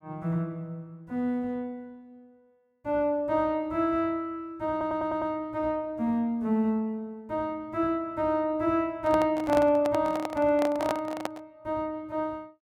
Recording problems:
audio stuttering; at 4.5 s
handling noise; from 9 to 11 s; peak +1 dB vs average level

